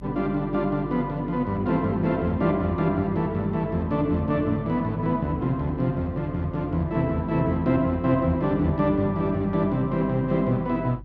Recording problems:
electrical hum; 50 Hz, harmonics up to 300 Hz, SNR 18 dB

